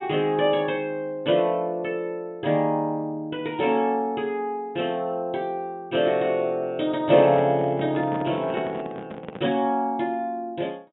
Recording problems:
low-pass filter; nothing above 3.7 kHz
microphone handling noise; from 7 to 9.5 s; peak -4 dB vs average level

